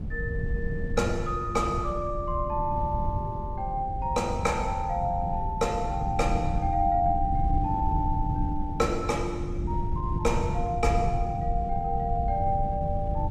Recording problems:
wind on the microphone; below 130 Hz, SNR 3 dB

